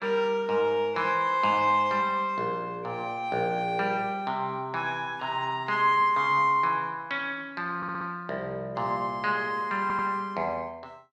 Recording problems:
stutter; at 8 s and at 10 s

